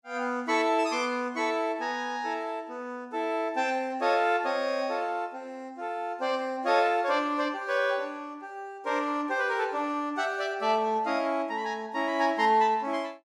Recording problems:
none

